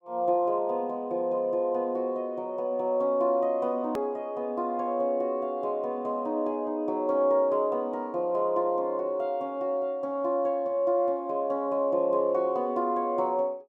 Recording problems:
hard cut with a click; at 4 s

